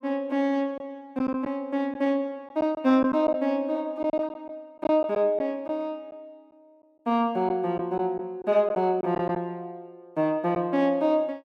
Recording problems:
lost packets; 4% of the sound replaced, filled with silence

